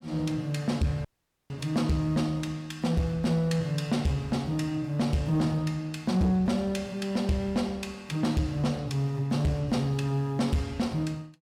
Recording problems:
distorted audio; soft clipping, signal-to-distortion ratio 12 dB
audio cutting out; at 1 s

